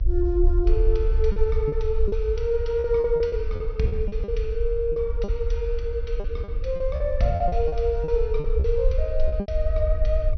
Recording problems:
treble cut off; nothing above 6.1 kHz
hum; 50 Hz, harmonics up to 600 Hz, SNR 22 dB
rumble; below 58 Hz, SNR 1 dB
packet loss; 10% of the sound replaced, filled with repeated pitch periods

